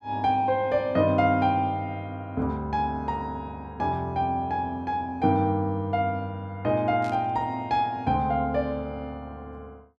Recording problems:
static burst; at 7 s; peak -14 dB vs average level

